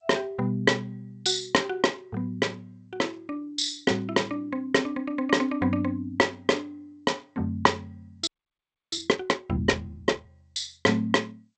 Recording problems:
codec artefacts; G.722, log-spectral distance 3 dB, nothing above 8.2 kHz
frozen audio; at 8.5 s for 0.5 s

